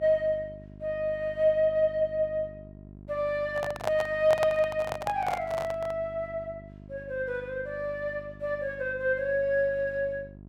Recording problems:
electrical hum; 50 Hz, harmonics up to 750 Hz, SNR 19 dB
microphone handling noise; from 3.5 to 6 s; peak +2 dB vs average level

